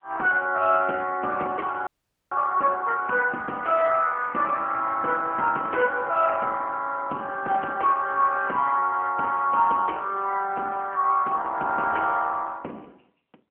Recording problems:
telephone audio; 260 Hz to 3.3 kHz, AMR-NB
audio freezing; at 2 s

